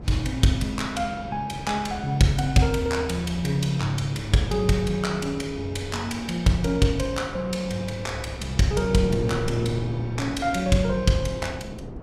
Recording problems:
wind on the microphone; below 350 Hz, SNR 12 dB

